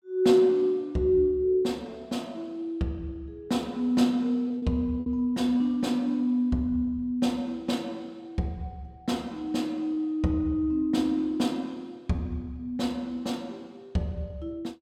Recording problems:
packet loss; 1.5% of the sound replaced, filled with repeated pitch periods

